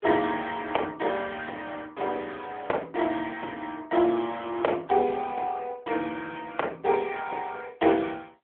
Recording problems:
phone line; 320 Hz to 3.4 kHz, AMR-NB

